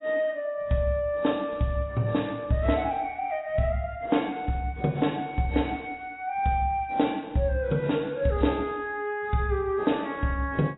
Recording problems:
lossy codec; AAC, log-spectral distance 3 dB, nothing above 3.9 kHz

